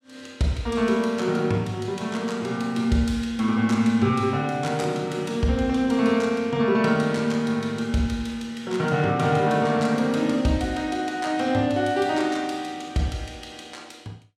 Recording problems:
none

